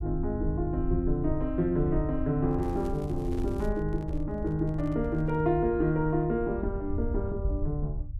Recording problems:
rumble; below 78 Hz, SNR 7 dB
microphone handling noise; from 2.5 to 5.5 s; peak -11 dB vs average level
crackle; from 2.5 to 3.5 s; loose cable, SNR 27 dB

